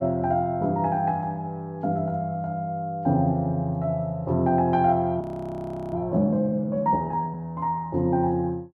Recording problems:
audio freezing; at 5 s for 0.5 s

